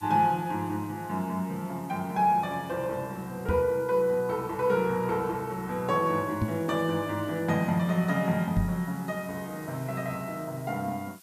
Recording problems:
hiss; slope +3 dB per octave, SNR 23 dB
microphone thump; at 3.5 s, at 6.5 s and at 8.5 s; peak +5 dB vs average level

